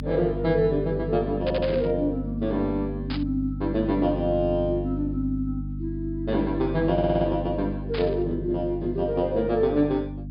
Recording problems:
treble cut off; nothing above 5.1 kHz
hum; 50 Hz, harmonics up to 300 Hz, SNR 7 dB
audio stuttering; at 1.5 s and at 7 s
burst of static; at 1.5 s, at 3 s and at 8 s; peak -6 dB vs average level

